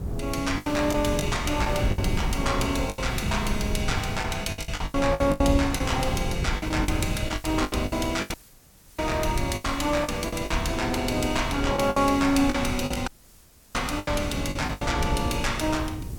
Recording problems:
hum; 60 Hz, harmonics up to 480 Hz, SNR 17 dB
hiss; slope +2 dB per octave, SNR 24 dB
wind noise; below 150 Hz, SNR 6 dB
lost packets; 12% of the sound replaced, filled with the last packet
dropout; at 8.5 s for 0.5 s and at 13 s for 0.5 s

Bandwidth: 17.5 kHz